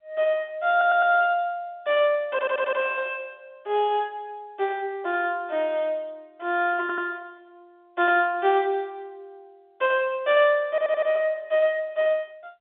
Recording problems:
telephone audio; 300 Hz to 3.5 kHz, G.711
audio stuttering; 4 times, first at 0.5 s

